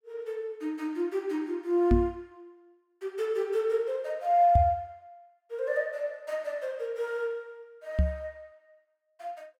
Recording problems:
knock on the microphone; at 2 s, at 4.5 s and at 8 s; peak +8 dB vs average level

